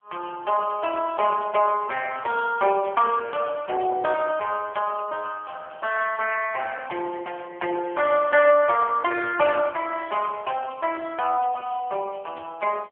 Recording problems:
phone line; 300 Hz to 3.2 kHz, AMR-NB

